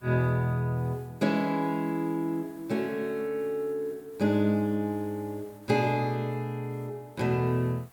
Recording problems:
background hiss; slope -4 dB per octave, SNR 27 dB

